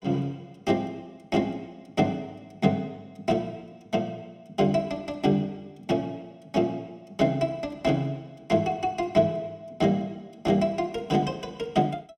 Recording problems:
none

